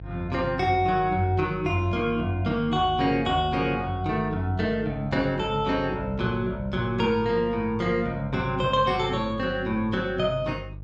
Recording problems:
hum; 50 Hz, harmonics up to 500 Hz, SNR 14 dB

